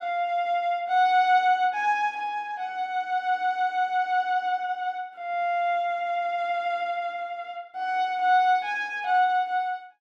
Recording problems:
none

